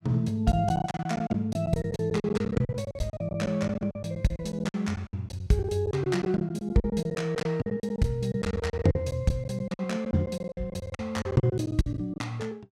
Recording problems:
packet loss; 18% of the sound replaced, filled with silence

